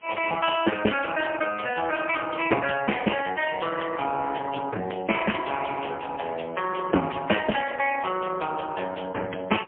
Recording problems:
telephone audio; 260 Hz to 3.3 kHz, AMR-NB, then MP3
wind noise; below 1.5 kHz, SNR 23 dB

